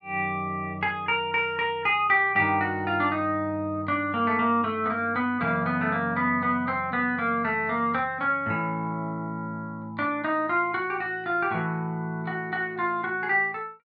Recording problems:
none

